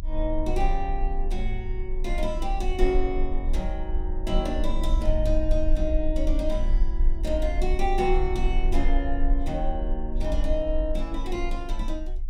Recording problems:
low-frequency rumble; below 40 Hz, strongest tone 24 Hz, SNR 0 dB

